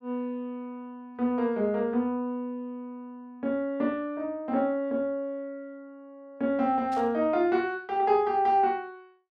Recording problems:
burst of static; at 7 s; peak -15 dB vs average level

